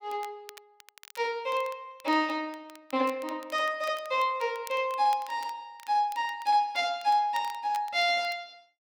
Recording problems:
crackling; vinyl, SNR 23 dB

